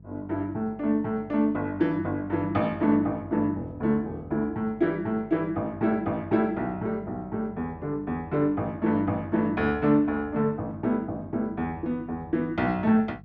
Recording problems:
hum; 50 Hz, harmonics up to 500 Hz, SNR 20 dB

